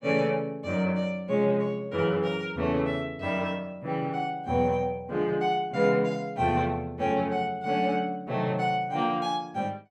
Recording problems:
none

